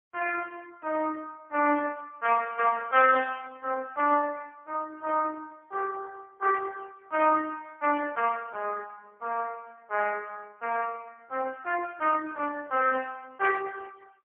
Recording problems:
phone line; 260 Hz to 2.7 kHz, AMR-NB, then MP3

